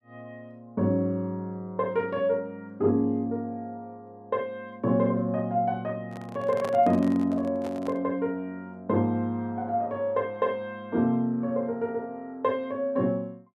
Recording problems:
handling noise; from 6 to 8 s; peak -5 dB vs average level

